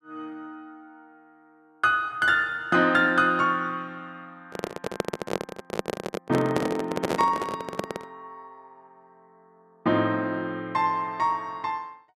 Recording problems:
handling noise; from 4.5 to 8 s; peak +2 dB vs average level

